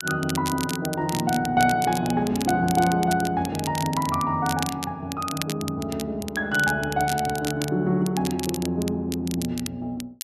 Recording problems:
crackle; vinyl, SNR 10 dB

